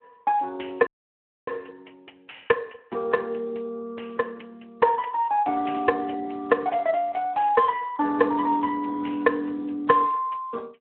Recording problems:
phone line; 260 Hz to 2.4 kHz, Speex
audio cutting out; at 1 s for 0.5 s

